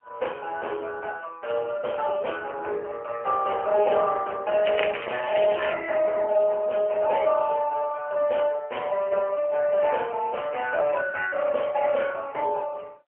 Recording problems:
telephone audio; 340 Hz to 3.1 kHz, AMR-NB, then MP3
crackling; from 4.5 to 5.5 s; loose cable, SNR 10 dB

